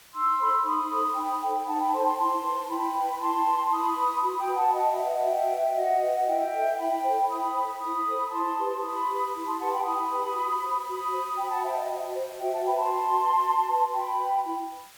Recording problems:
hiss; slope +1 dB per octave, SNR 21 dB

